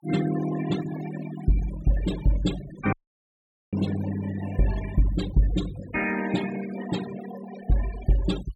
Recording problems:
noise reduction artefacts; signal-to-artefact ratio 11 dB
audio cutting out; at 3 s for 1 s

